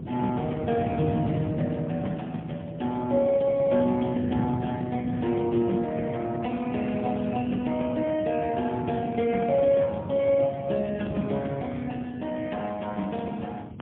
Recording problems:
telephone audio; 130 Hz to 3.4 kHz, AMR-NB, then MP3
wind on the microphone; below 280 Hz, SNR 7 dB

